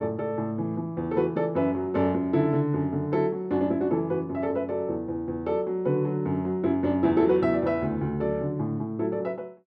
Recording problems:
none

